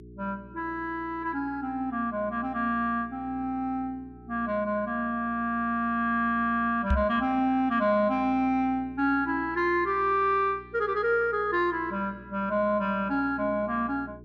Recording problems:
electrical hum; 60 Hz, harmonics up to 420 Hz, SNR 21 dB
microphone thump; at 7 s; peak +4 dB vs average level

